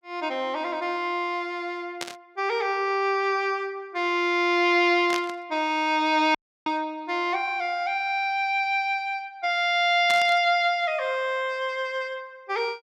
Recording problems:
burst of static; at 2 s, at 5 s and at 10 s; peak -2 dB vs average level
dropout; at 6.5 s

